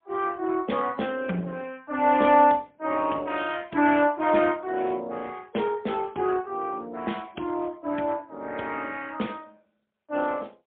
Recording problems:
phone line; 170 Hz to 3.4 kHz, AMR-NB, then MP3

